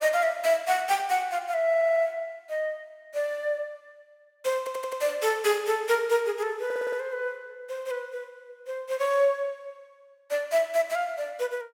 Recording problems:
stutter; at 1.5 s, at 4.5 s and at 6.5 s

